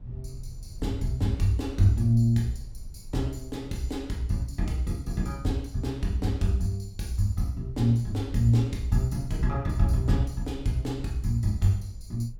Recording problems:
rumble; below 78 Hz, SNR 17 dB

